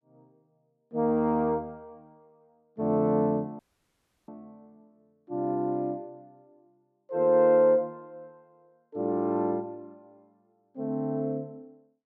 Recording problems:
audio cutting out; at 3.5 s for 0.5 s

